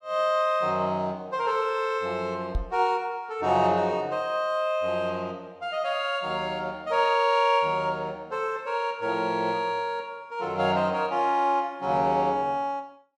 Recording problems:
microphone thump; at 2.5 s; peak +1 dB vs average level

